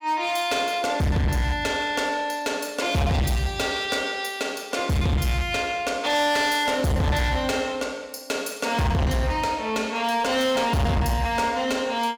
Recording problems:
distortion; hard clipping, signal-to-distortion ratio 6 dB

